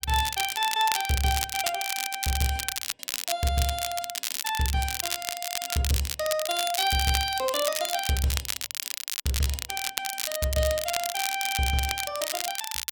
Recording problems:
crackle; vinyl, SNR 2 dB

